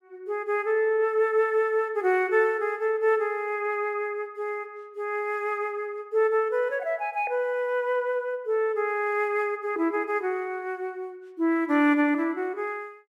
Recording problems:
none

